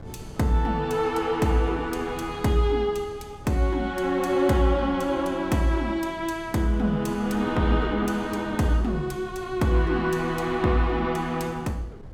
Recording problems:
wind noise; below 240 Hz, SNR 18 dB

